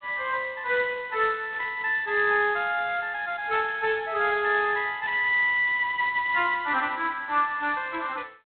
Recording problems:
telephone audio; 320 Hz to 3.9 kHz, G.726
static burst; at 1.5 s, at 3.5 s and at 5 s; peak -17 dB vs average level

